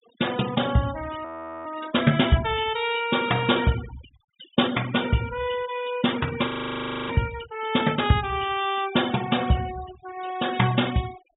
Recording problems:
treble missing; nothing above 4 kHz
denoising artefacts; signal-to-artefact ratio 14 dB
frozen audio; at 1.5 s and at 6.5 s for 0.5 s

